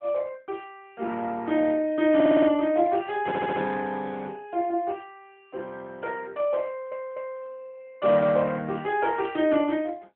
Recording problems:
telephone audio; 190 Hz to 3.5 kHz, AMR-NB
audio stuttering; at 2 s, at 3.5 s and at 6.5 s

